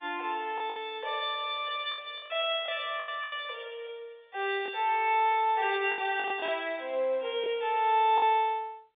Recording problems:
phone line; 340 Hz to 3.8 kHz, G.711
packet loss; 7% of the sound replaced, filled with the last packet

